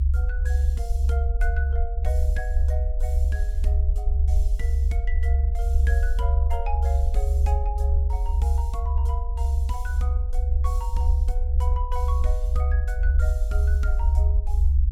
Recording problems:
rumble; below 70 Hz, SNR -13 dB

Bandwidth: 17 kHz